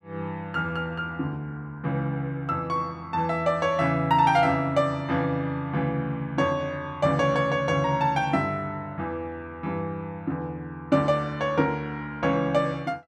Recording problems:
none

